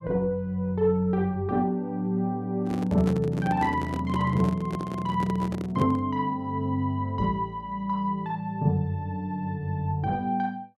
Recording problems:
microphone handling noise; from 2.5 to 6 s; peak -3 dB vs average level

